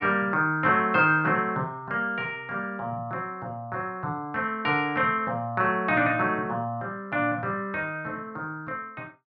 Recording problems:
treble cut off; nothing above 6.4 kHz

